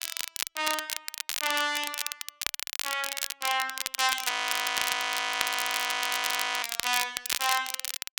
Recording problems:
crackling; vinyl, SNR 3 dB
audio freezing; at 4.5 s for 2.5 s

